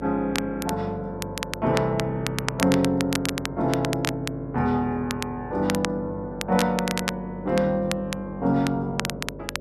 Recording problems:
electrical hum; 50 Hz, harmonics up to 600 Hz, SNR 13 dB
crackling; vinyl, SNR 7 dB

